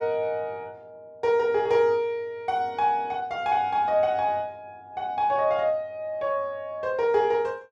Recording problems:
none

